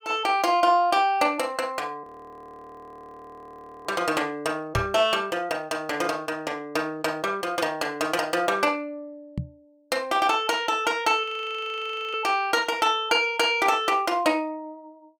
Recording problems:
frozen audio; at 2 s for 2 s and at 11 s for 1 s
microphone thump; at 5 s and at 9.5 s; peak -1 dB vs average level

